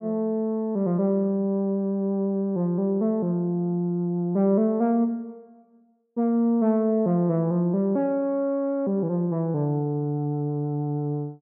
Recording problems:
none

